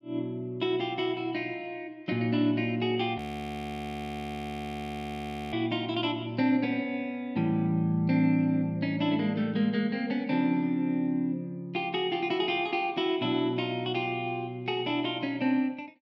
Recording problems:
audio freezing; at 3 s for 2.5 s

